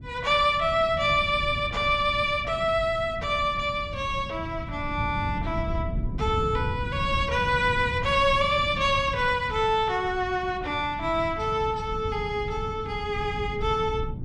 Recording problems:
wind noise; below 150 Hz, SNR 10 dB

